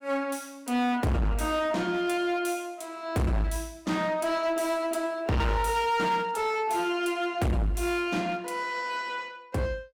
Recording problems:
distortion; hard clipping, uneven, signal-to-distortion ratio 7 dB

